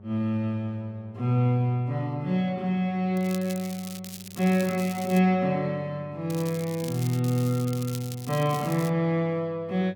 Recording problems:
hum; 50 Hz, harmonics up to 700 Hz, SNR 23 dB
crackling; from 3 to 5 s and from 6.5 to 9 s; loose cable, SNR 15 dB

